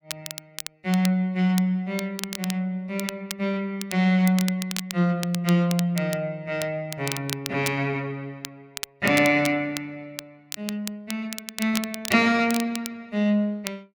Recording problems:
crackle; vinyl, SNR 11 dB

